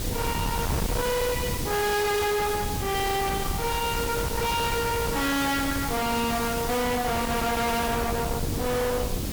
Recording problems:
distorted audio; hard clipping, signal-to-distortion ratio 6 dB
hiss; slope +2 dB per octave, SNR 7 dB
wind on the microphone; below 490 Hz, SNR 5 dB

